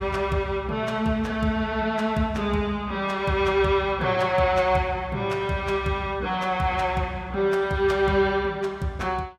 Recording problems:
none

